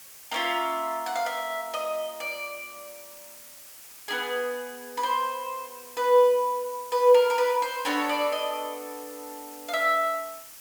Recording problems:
background hiss; slope +1 dB per octave, SNR 17 dB

